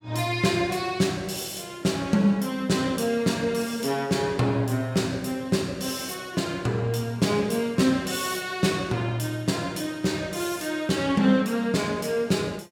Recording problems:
none

